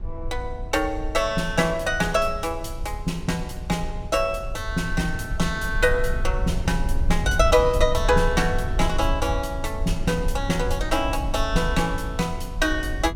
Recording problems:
rumble; below 66 Hz, SNR 6 dB

